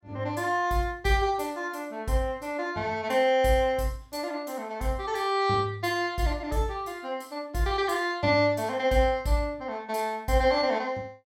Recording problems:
none

